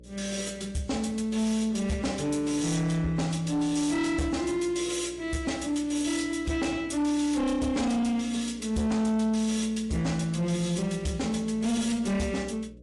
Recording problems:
lossy compression; MP3, log-spectral distance 3 dB, nothing above 11.3 kHz
distortion; soft clipping, signal-to-distortion ratio 11 dB
hum; 60 Hz, harmonics up to 600 Hz, SNR 23 dB

